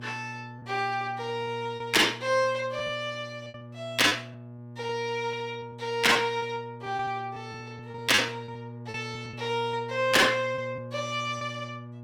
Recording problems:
distorted audio; hard clipping, signal-to-distortion ratio 11 dB
electrical hum; 60 Hz, harmonics up to 840 Hz, SNR 16 dB
packet loss; 8% of the sound replaced, filled with repeated pitch periods

